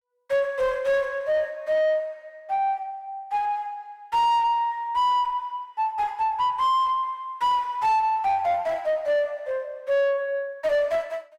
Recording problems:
distorted audio; soft clipping, signal-to-distortion ratio 7 dB

